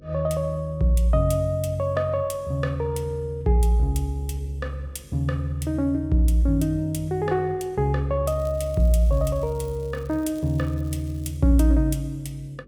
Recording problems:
hum; 50 Hz, harmonics up to 550 Hz, SNR 26 dB
crackle; from 8.5 to 11 s; loose cable, SNR 28 dB

